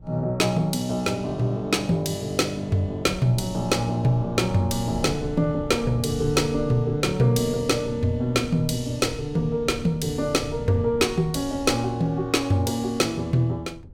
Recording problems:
wind on the microphone; below 150 Hz, SNR 15 dB

